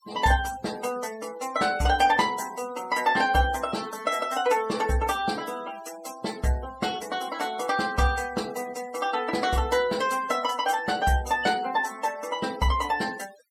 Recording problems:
noise reduction artefacts; signal-to-artefact ratio 16 dB

